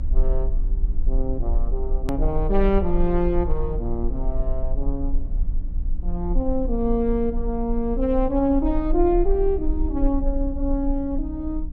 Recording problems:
treble missing; nothing above 8 kHz
hum; 60 Hz, harmonics up to 300 Hz, SNR 16 dB
low-frequency rumble; below 38 Hz, SNR 3 dB
edit click; at 2 s

